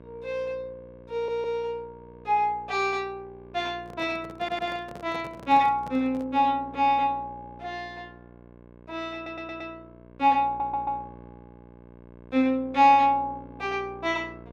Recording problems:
electrical hum; 60 Hz, harmonics up to 1.7 kHz, SNR 22 dB
audio stuttering; 4 times, first at 1 s
handling noise; from 4 to 6.5 s; peak -12 dB vs average level

